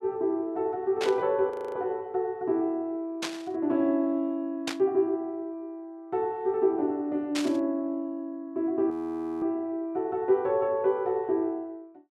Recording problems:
burst of static; 4 times, first at 1 s; peak +1 dB vs average level
frozen audio; at 1.5 s and at 9 s for 0.5 s

